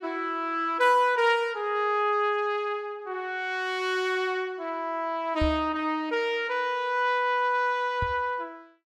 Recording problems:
microphone bump; at 5.5 s and at 8 s; peak 0 dB vs average level

